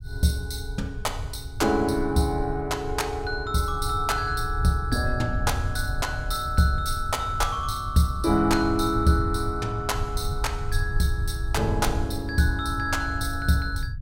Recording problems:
low-frequency rumble; below 92 Hz, SNR 7 dB

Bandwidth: 16 kHz